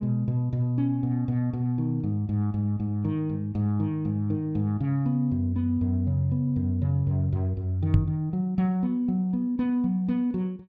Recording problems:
knock on the microphone; at 8 s; peak +6 dB vs average level

